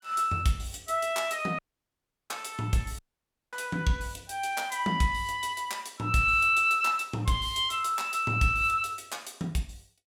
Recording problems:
dropout; at 1.5 s for 0.5 s and at 3 s for 0.5 s

